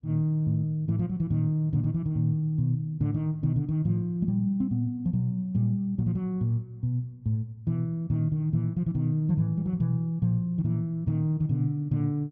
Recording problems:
none

